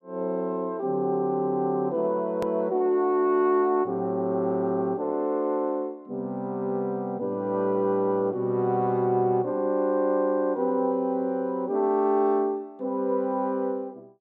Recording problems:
edit click; at 2.5 s

